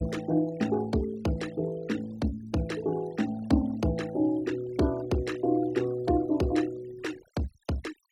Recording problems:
noise reduction artefacts; signal-to-artefact ratio 19 dB

